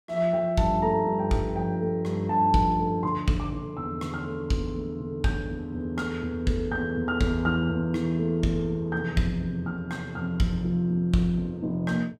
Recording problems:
none

